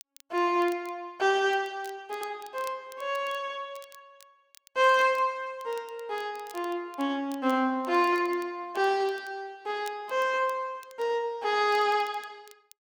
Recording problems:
crackle; vinyl, SNR 25 dB

